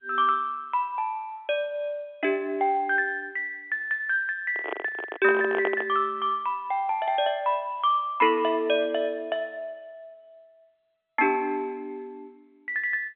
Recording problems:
phone line; 260 Hz to 3.4 kHz, G.711
microphone handling noise; from 4.5 to 6 s; peak +2 dB vs average level

